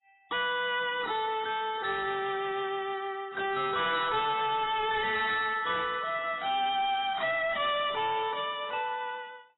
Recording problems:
lossy codec; AAC, then AAC, log-spectral distance 5 dB, nothing above 3.5 kHz
distorted audio; hard clipping, signal-to-distortion ratio 9 dB

